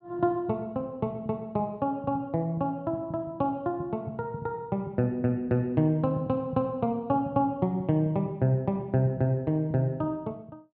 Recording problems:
none

